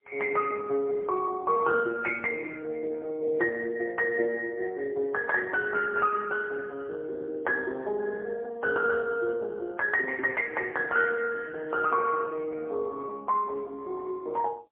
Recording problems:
telephone audio; 320 Hz to 2.2 kHz, AMR-NB, then MP3

